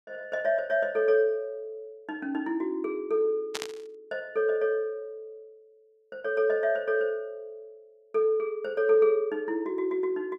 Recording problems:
static burst; at 3.5 s; peak -1 dB vs average level

